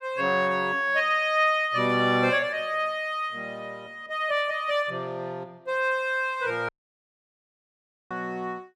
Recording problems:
audio cutting out; at 6.5 s for 1.5 s

